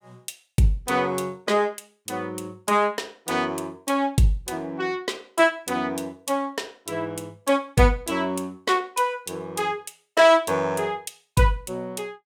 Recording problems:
none

